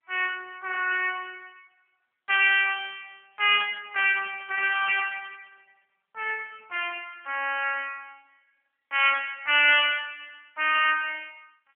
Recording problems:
telephone audio; 300 Hz to 3.2 kHz, AMR-NB

